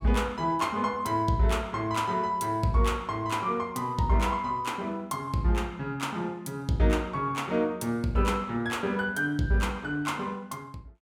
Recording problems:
none

